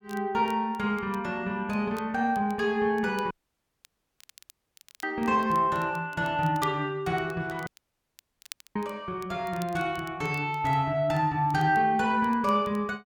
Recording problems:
crackling; vinyl, SNR 25 dB
dropout; at 3.5 s for 1.5 s and at 7.5 s for 1 s

